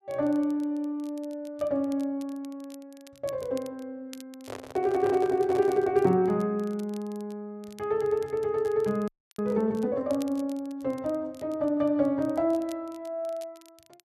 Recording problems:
crackling; vinyl, SNR 26 dB
microphone handling noise; from 4.5 to 6 s; peak -4 dB vs average level
audio freezing; at 9 s

